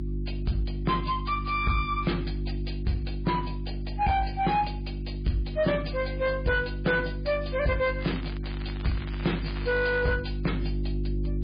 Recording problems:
codec artefacts; MP3, log-spectral distance 3 dB, nothing above 4.8 kHz
distortion; soft clipping, signal-to-distortion ratio 10 dB
mains hum; 50 Hz, harmonics up to 350 Hz, SNR 5 dB
crackle; from 8 to 10 s; loose cable, SNR 15 dB

